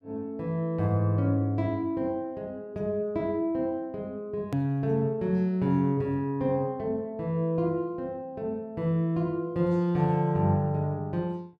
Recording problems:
click at an edit; at 4.5 s

